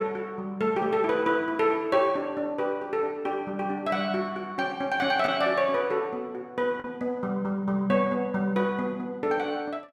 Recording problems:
lost packets; 0.6% of the sound replaced, filled with the last packet

